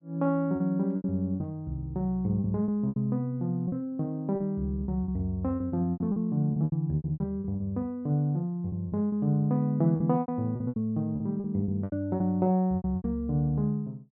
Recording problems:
lost packets; 13% of the sound replaced, filled with repeated pitch periods

